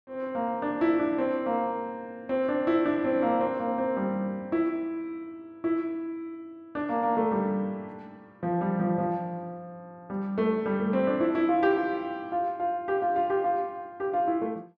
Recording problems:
none

